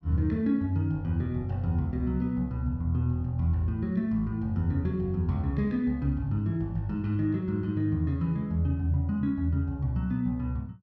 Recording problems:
none

